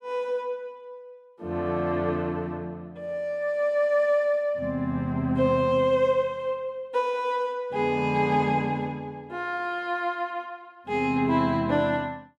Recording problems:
none

